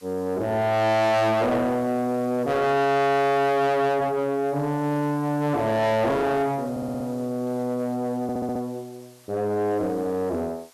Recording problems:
distortion; soft clipping, signal-to-distortion ratio 7 dB
hiss; slope 0 dB per octave, SNR 27 dB
audio stuttering; at 6.5 s and at 8 s

